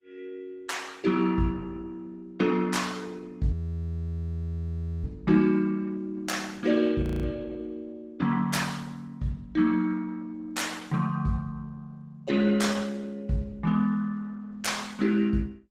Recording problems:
lossy compression; Opus, log-spectral distance 3 dB, nothing above 17.7 kHz
frozen audio; at 3.5 s for 1.5 s and at 7 s

